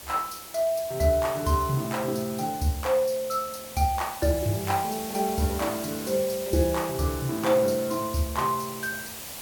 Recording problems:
background hiss; SNR 11 dB

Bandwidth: 18 kHz